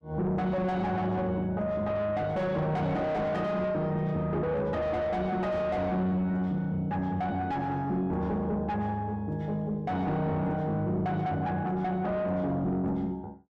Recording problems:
distorted audio; soft clipping, signal-to-distortion ratio 7 dB

